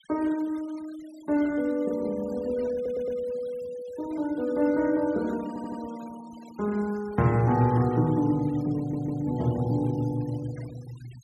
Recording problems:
denoising artefacts; signal-to-artefact ratio 22 dB
stutter; at 3 s, at 5.5 s and at 9 s

